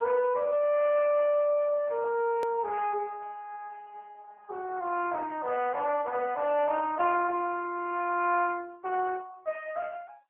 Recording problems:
phone line; 370 Hz to 3.1 kHz, AMR-NB
click at an edit; at 2.5 s

